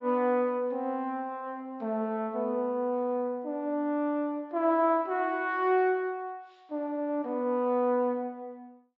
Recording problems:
treble cut off; nothing above 8 kHz

